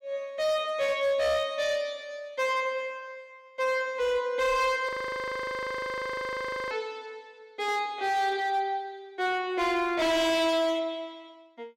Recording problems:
distortion; hard clipping, signal-to-distortion ratio 8 dB
frozen audio; at 5 s for 2 s

